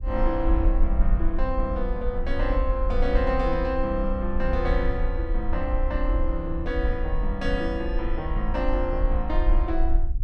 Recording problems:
low-frequency rumble; below 50 Hz, SNR 0 dB

